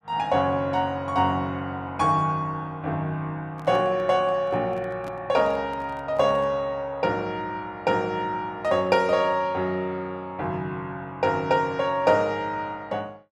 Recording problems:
microphone handling noise; from 3.5 to 6.5 s; peak -11 dB vs average level

